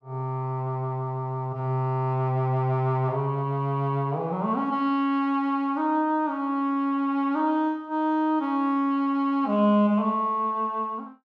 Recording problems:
none

